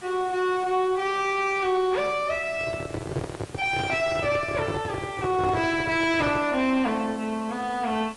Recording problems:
codec artefacts; AAC, log-spectral distance 5 dB, nothing above 10.4 kHz
distortion; soft clipping, signal-to-distortion ratio 9 dB
hiss; slope -4 dB per octave, SNR 20 dB
microphone handling noise; from 2.5 to 6.5 s; peak 0 dB vs average level

